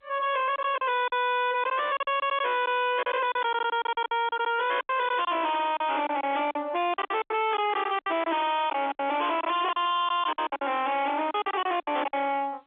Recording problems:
telephone audio; 240 Hz to 3.6 kHz, G.711
distorted audio; hard clipping, signal-to-distortion ratio 5 dB
lost packets; 13% of the sound replaced, filled with silence

